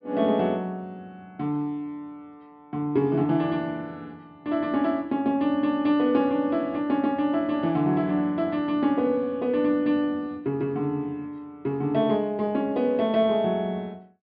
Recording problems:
low-pass filter; nothing above 5.5 kHz

